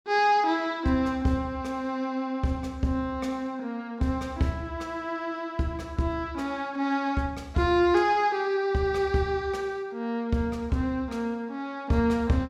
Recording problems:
none

